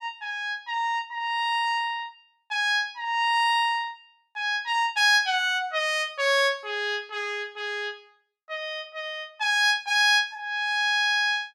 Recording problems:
none

